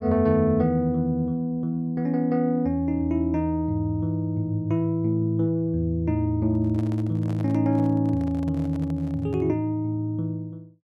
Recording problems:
handling noise; from 6.5 to 9.5 s; peak -12 dB vs average level

